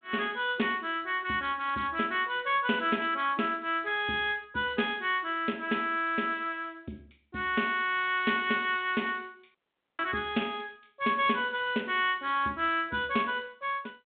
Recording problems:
phone line; 170 Hz to 3.6 kHz, G.726
audio cutting out; at 9.5 s

